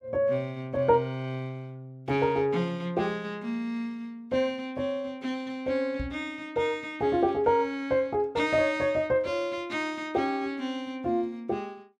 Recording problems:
knock on the microphone; at 6 s; peak -3 dB vs average level

